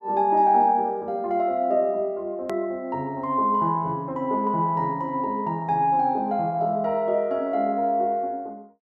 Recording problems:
hard cut with a click; at 2.5 s

